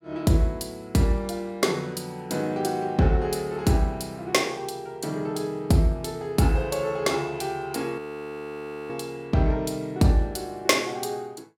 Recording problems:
audio freezing; at 8 s for 1 s

